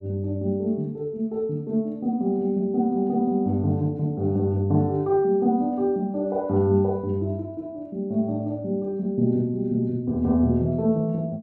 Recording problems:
none

